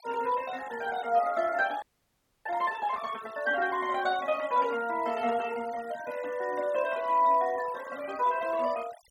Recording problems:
noise reduction artefacts; signal-to-artefact ratio 20 dB
frozen audio; at 2 s for 0.5 s

